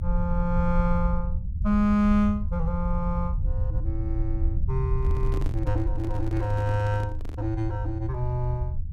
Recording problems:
rumble; below 76 Hz, SNR 2 dB
handling noise; from 5 to 7.5 s; peak -5 dB vs average level

